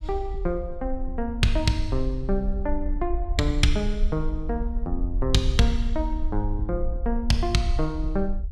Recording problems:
rumble; below 50 Hz, strongest tone 22 Hz, SNR 3 dB

